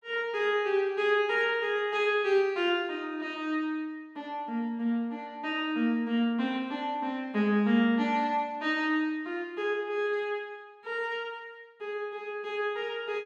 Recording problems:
none

